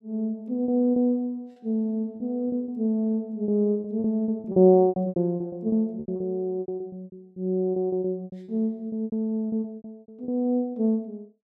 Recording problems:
packet loss; 16% of the sound replaced, filled with repeated pitch periods

